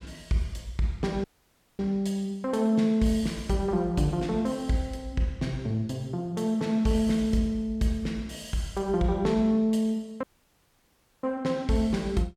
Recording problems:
audio cutting out; at 1 s for 0.5 s and at 10 s for 1 s

